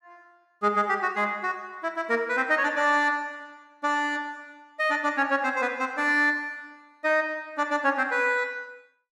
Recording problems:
none

